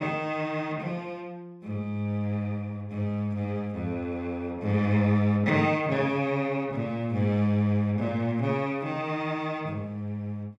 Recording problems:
none

